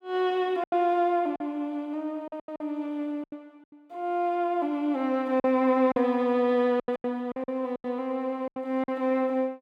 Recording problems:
packet loss; 10% of the sound replaced, filled with silence

